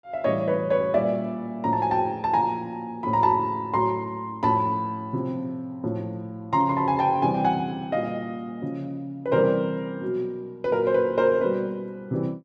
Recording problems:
none

